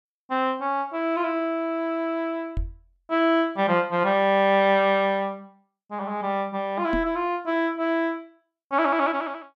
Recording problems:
microphone thump; at 2.5 s and at 7 s; peak -2 dB vs average level

